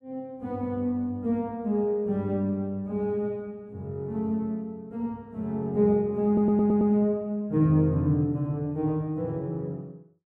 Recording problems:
stutter; at 6.5 s

